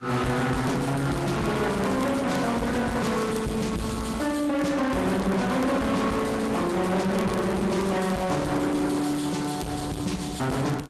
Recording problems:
lossy codec; Vorbis, then Opus, log-spectral distance 4 dB, nothing above 12.7 kHz
distortion; soft clipping, signal-to-distortion ratio 6 dB
crackling; vinyl, SNR 24 dB

